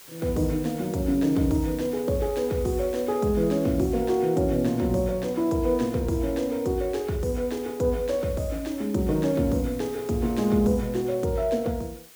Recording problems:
hiss; slope 0 dB per octave, SNR 20 dB

